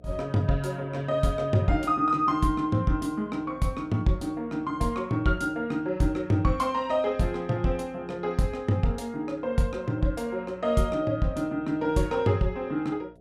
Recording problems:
mains hum; 60 Hz, harmonics up to 720 Hz, SNR 26 dB

